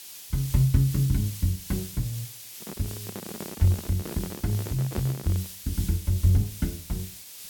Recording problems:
hiss; SNR 12 dB
microphone handling noise; from 2.5 to 5.5 s; peak -1 dB vs average level

